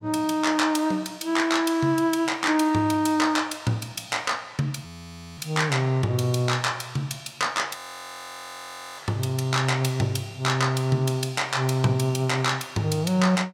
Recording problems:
audio freezing; at 5 s for 0.5 s and at 8 s for 1 s

